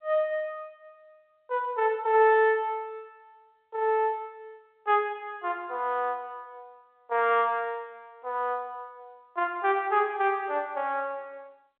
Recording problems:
telephone audio; 340 Hz to 3.7 kHz, G.711

